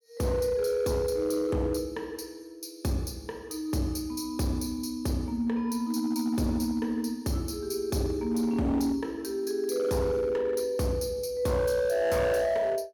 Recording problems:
distorted audio; hard clipping, signal-to-distortion ratio 12 dB

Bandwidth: 17.5 kHz